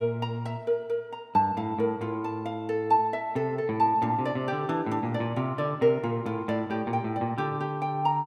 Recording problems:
none

